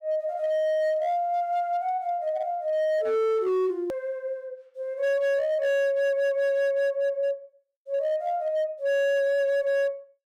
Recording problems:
distortion; hard clipping, signal-to-distortion ratio 11 dB
hard cut with a click; at 4 s

